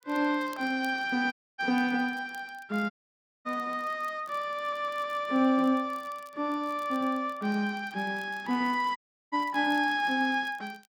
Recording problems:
crackle; vinyl, SNR 28 dB
audio cutting out; at 1.5 s, at 3 s for 0.5 s and at 9 s
audio stuttering; at 4.5 s

